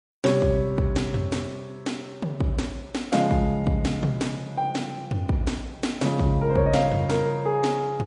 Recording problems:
codec artefacts; MP3, log-spectral distance 2 dB, nothing above 10.1 kHz

